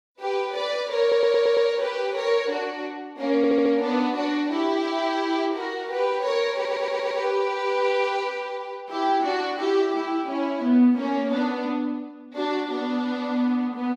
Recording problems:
audio stuttering; at 1 s, at 3.5 s and at 6.5 s

